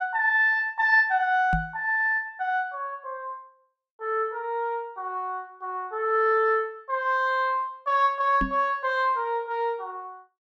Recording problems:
knock on the microphone; at 1.5 s and at 8.5 s; peak 0 dB vs average level

